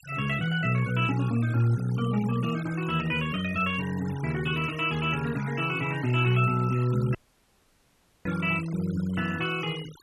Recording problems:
noise reduction artefacts; signal-to-artefact ratio 17 dB
dropout; at 7 s for 1 s

